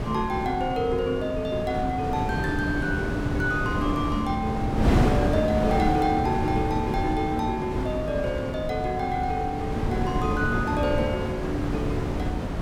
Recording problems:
wind on the microphone; below 410 Hz, SNR 1 dB

